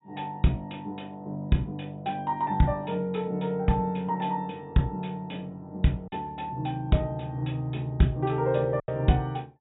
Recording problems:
treble missing; nothing above 4 kHz
lost packets; 1.3% of the sound replaced, filled with silence

